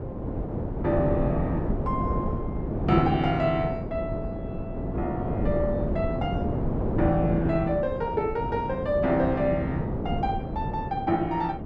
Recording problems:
wind on the microphone; below 370 Hz, SNR 2 dB

